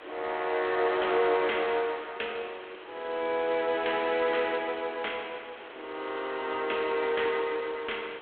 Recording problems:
phone line; 300 Hz to 3.4 kHz, G.726
hiss; SNR 17 dB

